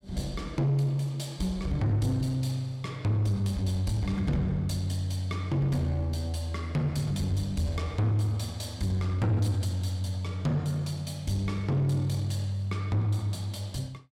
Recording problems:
distorted audio; soft clipping, signal-to-distortion ratio 12 dB

